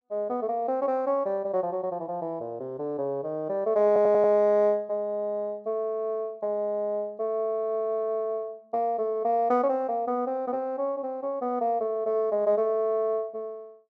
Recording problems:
audio stuttering; at 4 s

